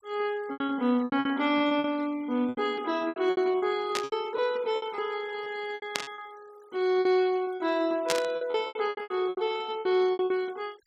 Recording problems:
noise reduction artefacts; signal-to-artefact ratio 24 dB
lost packets; 17% of the sound replaced, filled with repeated pitch periods
burst of static; at 4 s, at 6 s and at 8 s; peak +5 dB vs average level

